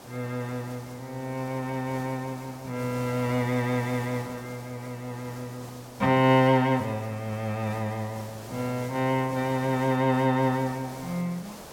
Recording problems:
background hiss; SNR 17 dB

